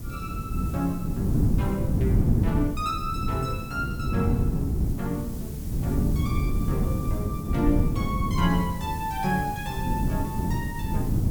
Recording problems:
background hiss; slope 0 dB per octave, SNR 14 dB
wind noise; below 200 Hz, SNR -3 dB

